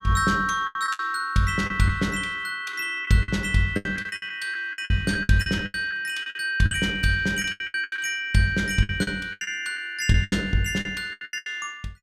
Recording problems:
packet loss; 15% of the sound replaced, filled with the last packet

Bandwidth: 15.5 kHz